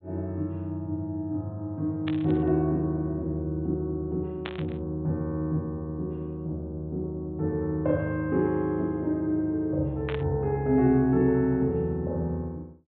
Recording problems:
treble missing; nothing above 4 kHz
static burst; at 2 s, at 4.5 s and at 10 s; peak -4 dB vs average level

